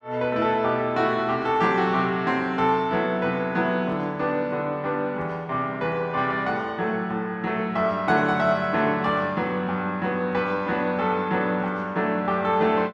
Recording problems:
none

